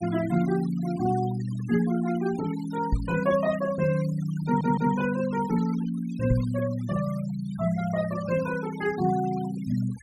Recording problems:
denoising artefacts; signal-to-artefact ratio 17 dB
knock on the microphone; at 3 s and at 6.5 s; peak +5 dB vs average level
audio stuttering; at 4.5 s

